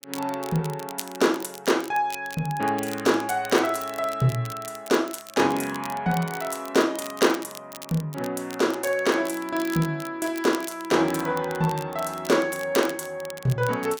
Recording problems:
crackle; vinyl, SNR 15 dB

